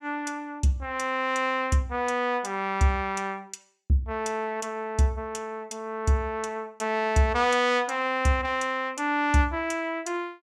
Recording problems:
none

